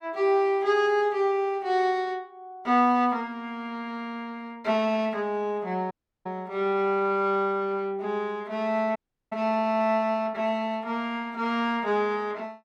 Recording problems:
audio cutting out; at 6 s and at 9 s

